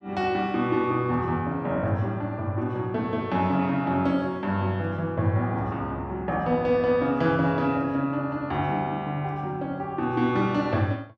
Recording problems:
none

